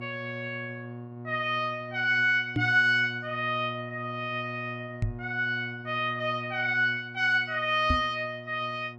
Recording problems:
electrical hum; 60 Hz, harmonics up to 1.1 kHz, SNR 14 dB
microphone bump; at 2.5 s, at 5 s and at 8 s; peak +2 dB vs average level

